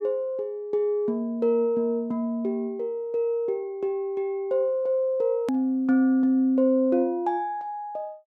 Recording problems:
edit click; at 5.5 s

